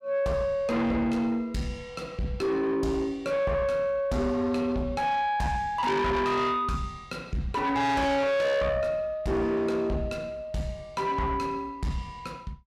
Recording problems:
distortion; soft clipping, signal-to-distortion ratio 7 dB

